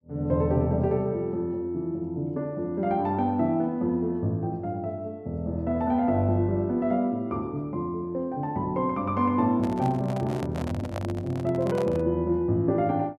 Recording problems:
microphone handling noise; from 9.5 to 12 s; peak -4 dB vs average level

